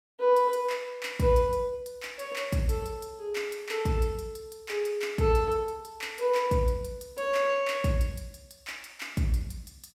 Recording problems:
none

